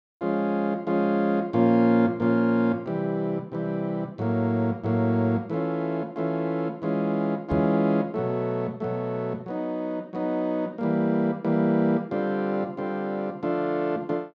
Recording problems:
knock on the microphone; at 7.5 s; peak -2 dB vs average level

